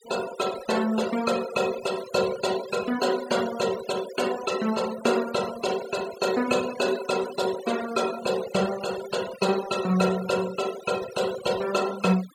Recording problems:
denoising artefacts; signal-to-artefact ratio 12 dB

